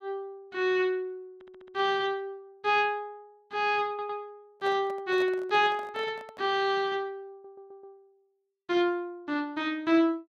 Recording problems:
stutter; at 1.5 s, at 4 s and at 7.5 s
handling noise; from 4.5 to 6.5 s; peak -9 dB vs average level

